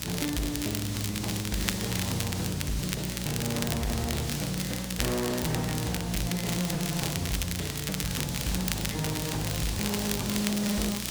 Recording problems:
distorted audio; hard clipping, uneven, signal-to-distortion ratio 6 dB
hum; 60 Hz, harmonics up to 540 Hz, SNR 10 dB
hiss; SNR 5 dB
crackling; vinyl, SNR 3 dB

